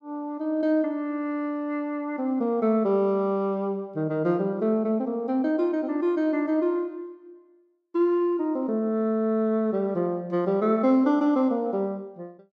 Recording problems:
none

